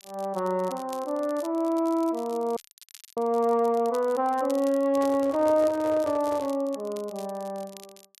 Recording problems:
crackling; vinyl, SNR 22 dB
frozen audio; at 2.5 s for 0.5 s
microphone handling noise; from 5 to 6.5 s; peak -9 dB vs average level

